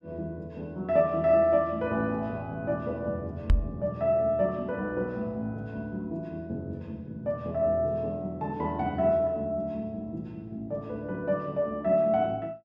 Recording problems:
knock on the microphone; at 3.5 s; peak +8 dB vs average level

